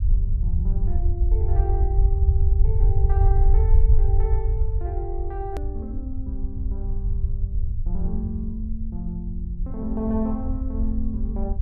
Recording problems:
rumble; below 72 Hz, SNR -8 dB
click at an edit; at 5.5 s

